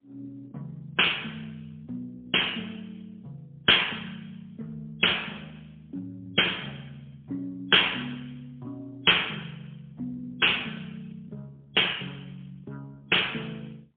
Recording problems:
phone line; 240 Hz to 3.4 kHz, AMR-NB, then MP3

